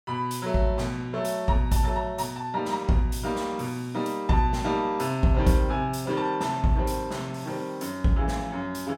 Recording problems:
none

